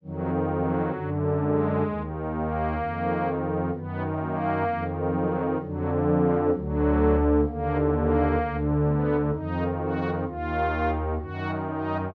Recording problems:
none

